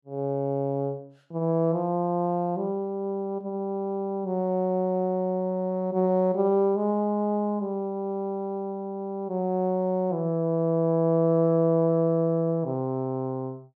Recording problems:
none

